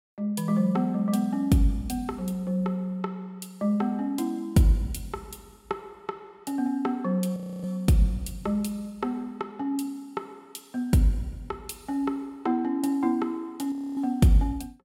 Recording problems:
audio freezing; at 7.5 s and at 14 s

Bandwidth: 16.5 kHz